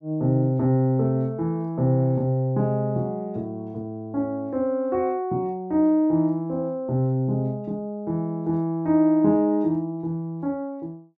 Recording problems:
none

